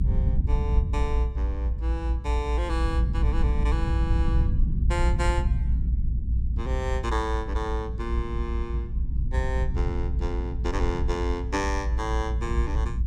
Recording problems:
low-frequency rumble; below 72 Hz, SNR -5 dB

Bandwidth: 16.5 kHz